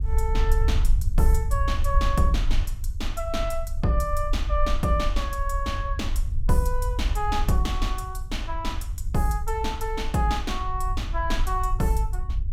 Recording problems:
low-frequency rumble; below 60 Hz, SNR 0 dB

